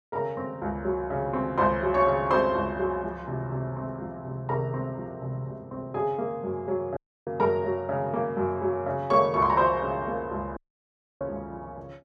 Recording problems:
audio cutting out; at 7 s and at 11 s for 0.5 s

